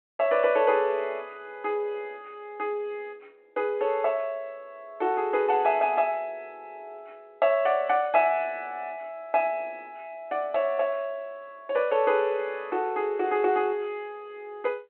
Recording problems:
phone line; 260 Hz to 3.3 kHz, G.726

